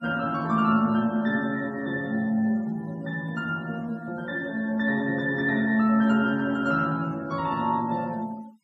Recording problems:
denoising artefacts; signal-to-artefact ratio 27 dB

